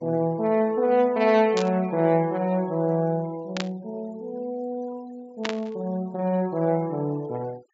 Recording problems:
treble missing; nothing above 8 kHz
noise reduction artefacts; signal-to-artefact ratio 26 dB
burst of static; at 1.5 s, at 3.5 s and at 5.5 s; peak 0 dB vs average level

